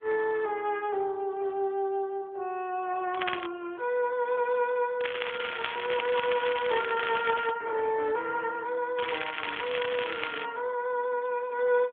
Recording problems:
telephone audio; 340 Hz to 3.4 kHz, AMR-NB
crackle; at 3 s, from 5 to 7.5 s and from 9 to 10 s; loose cable, SNR 5 dB

